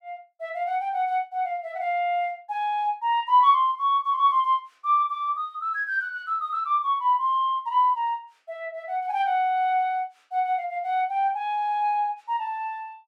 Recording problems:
none

